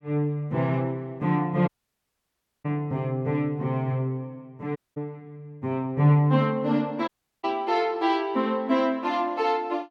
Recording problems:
dropout; at 1.5 s for 1 s, at 5 s and at 7 s

